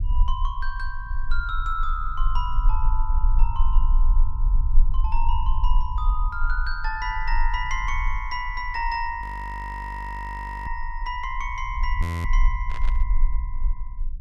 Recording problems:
rumble; below 40 Hz, strongest tone 18 Hz, SNR -3 dB
audio freezing; at 9 s for 1.5 s and at 12 s
burst of static; at 13 s; peak -7 dB vs average level

